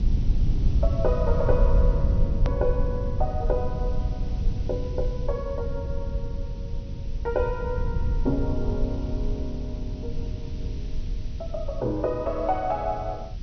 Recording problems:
low-pass filter; nothing above 6.2 kHz
background hiss; slope +4 dB per octave, SNR 23 dB
low-frequency rumble; below 84 Hz, SNR -1 dB
edit click; at 2.5 s

